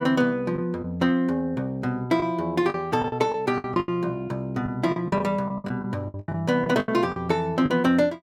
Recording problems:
packet loss; 11% of the sound replaced, filled with the last packet

